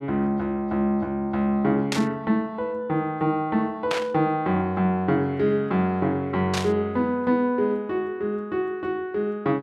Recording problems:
static burst; at 2 s, at 4 s and at 6.5 s; peak +1 dB vs average level

